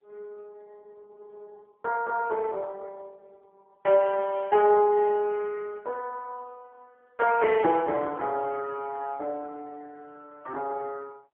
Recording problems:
phone line; 320 Hz to 2.4 kHz, AMR-NB

